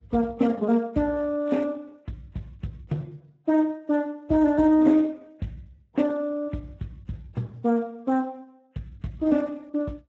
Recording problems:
lossy codec; MP3, then Speex, log-spectral distance 2 dB

